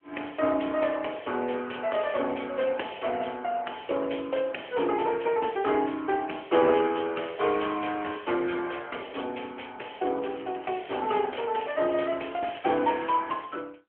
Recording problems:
telephone audio; 240 Hz to 3.2 kHz, AMR-NB
crackle; from 10 to 13 s; loose cable, SNR 19 dB

